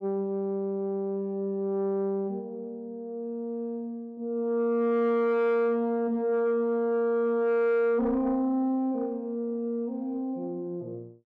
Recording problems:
distorted audio; soft clipping, signal-to-distortion ratio 11 dB

